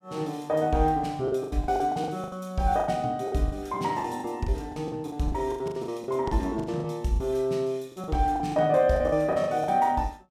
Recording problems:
packet loss; 16% of the sound replaced, filled with the last packet

